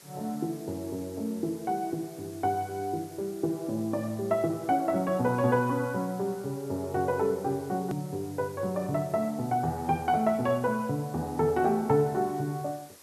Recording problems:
background hiss; SNR 21 dB
edit click; at 8 s

